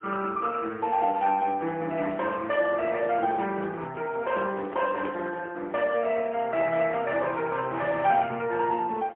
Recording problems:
telephone audio; 240 Hz to 3.5 kHz, AMR-NB, then MP3
microphone handling noise; from 3 to 5.5 s; peak -8 dB vs average level

